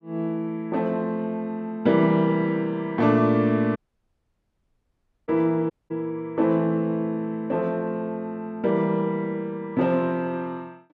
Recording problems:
dropout; at 4 s for 1.5 s and at 5.5 s

